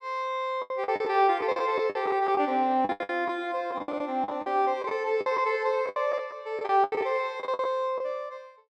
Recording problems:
packet loss; 15% of the sound replaced, filled with the last packet

